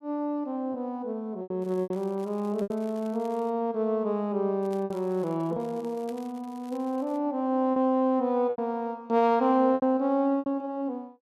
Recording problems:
lost packets; 6% of the sound replaced, filled with repeated pitch periods
crackling; from 1.5 to 3.5 s and from 4.5 to 7 s; loose cable, SNR 29 dB

